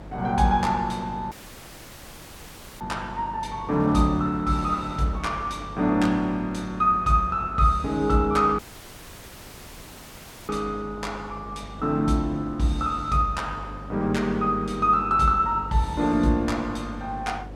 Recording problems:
electrical hum; 50 Hz, harmonics up to 500 Hz, SNR 18 dB
wind on the microphone; below 860 Hz, SNR 21 dB
dropout; at 1.5 s for 1.5 s and at 8.5 s for 2 s

